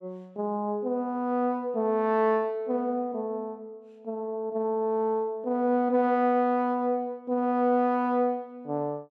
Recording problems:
none

